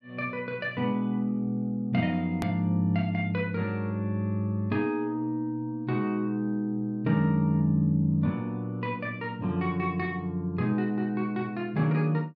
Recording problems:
edit click; at 2.5 s

